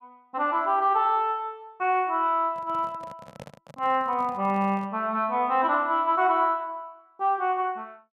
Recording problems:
handling noise; from 2.5 to 5 s; peak -13 dB vs average level

